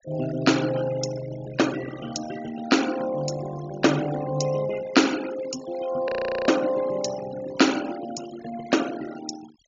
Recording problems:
low-pass filter; nothing above 7.1 kHz
denoising artefacts; signal-to-artefact ratio 14 dB
frozen audio; at 6 s

